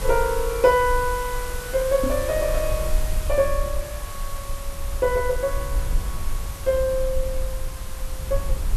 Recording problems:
background hiss; SNR 13 dB
low-frequency rumble; below 54 Hz, SNR 7 dB
microphone thump; at 2 s; peak -1 dB vs average level

